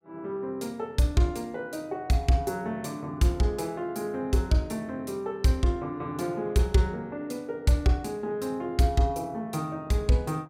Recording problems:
none

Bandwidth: 16.5 kHz